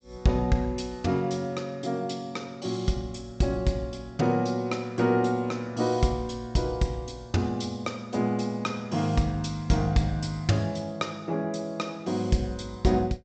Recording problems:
treble cut off; nothing above 8 kHz

